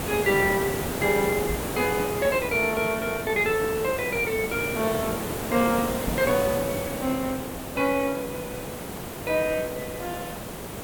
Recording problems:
background hiss; slope -6 dB per octave, SNR 5 dB
microphone bump; at 1.5 s and at 6 s; peak -2 dB vs average level

